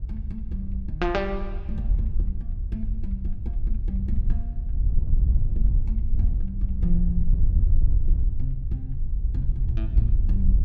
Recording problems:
wind noise; below 62 Hz, SNR -6 dB

